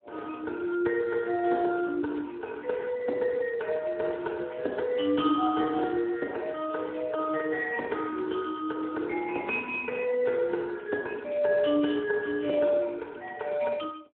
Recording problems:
telephone audio; 260 Hz to 3 kHz, Speex

